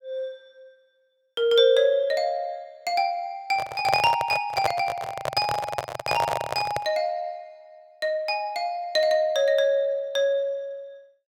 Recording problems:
microphone handling noise; from 3.5 to 7 s; peak +3 dB vs average level

